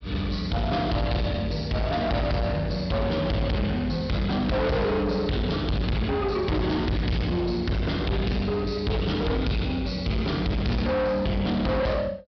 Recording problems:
treble missing; nothing above 5.5 kHz
distorted audio; soft clipping, signal-to-distortion ratio 6 dB

